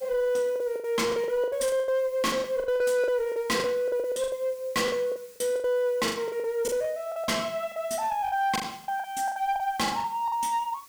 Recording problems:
distortion; hard clipping, uneven, signal-to-distortion ratio 11 dB
hiss; SNR 24 dB
lost packets; 17% of the sound replaced, filled with the last packet

